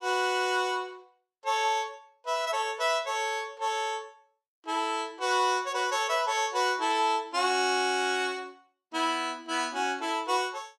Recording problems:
none

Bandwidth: 14.5 kHz